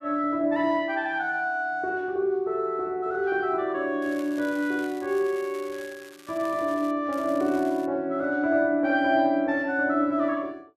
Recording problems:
crackling; from 4 to 7 s and at 7 s; loose cable, SNR 23 dB

